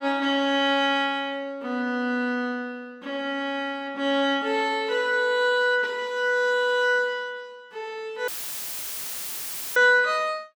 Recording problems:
dropout; at 8.5 s for 1.5 s; filled with static

